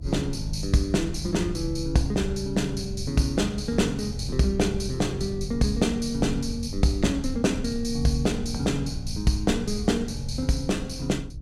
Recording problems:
hum; 60 Hz, harmonics up to 360 Hz, SNR 21 dB
rumble; below 78 Hz, SNR 11 dB

